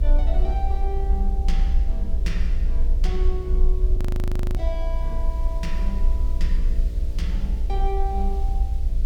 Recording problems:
hum; 60 Hz, harmonics up to 660 Hz, SNR 9 dB
background hiss; slope 0 dB per octave, SNR 21 dB
rumble; below 56 Hz, strongest tone 26 Hz, SNR -8 dB
frozen audio; at 4 s for 0.5 s

